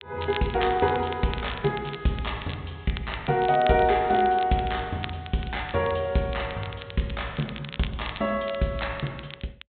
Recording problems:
treble cut off; nothing above 4 kHz
crackle; vinyl, SNR 15 dB

